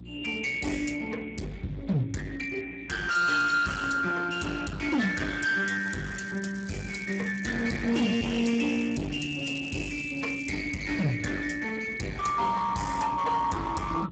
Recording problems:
lossy compression; Speex, log-spectral distance 5 dB, nothing above 7.6 kHz
distortion; hard clipping, uneven, signal-to-distortion ratio 6 dB
mains hum; 60 Hz, harmonics up to 360 Hz, SNR 18 dB
crackle; from 6 to 11 s; loose cable, SNR 22 dB

